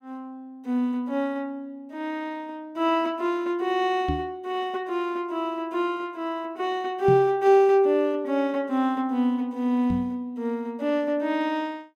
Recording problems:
microphone bump; at 4 s, at 7 s and at 10 s; peak +1 dB vs average level

